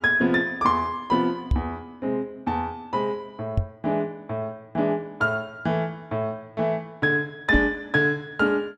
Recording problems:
microphone thump; at 1.5 s, at 3.5 s and at 7.5 s; peak +5 dB vs average level

